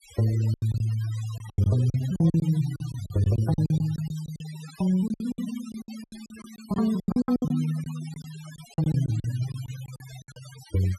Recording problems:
noise reduction artefacts; signal-to-artefact ratio 20 dB
lost packets; 17% of the sound replaced, filled with silence

